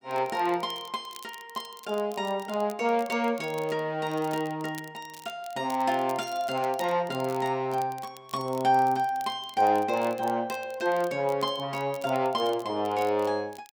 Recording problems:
crackle; vinyl, SNR 21 dB

